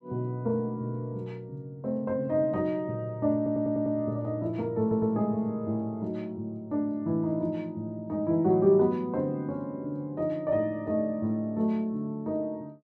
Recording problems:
audio stuttering; at 3.5 s and at 5 s

